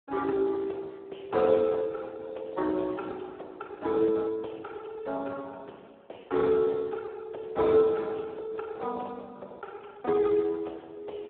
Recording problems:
phone line; 340 Hz to 2.2 kHz, Speex

